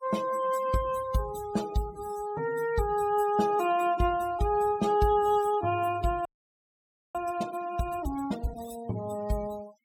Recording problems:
denoising artefacts; signal-to-artefact ratio 17 dB
frozen audio; at 6.5 s for 1 s

